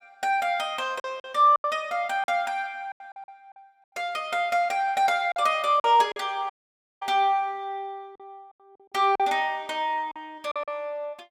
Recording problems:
lost packets; 7% of the sound replaced, filled with silence
dropout; at 6.5 s for 0.5 s

